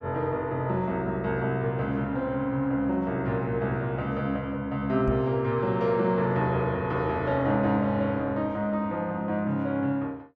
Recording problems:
knock on the microphone; at 5 s; peak 0 dB vs average level

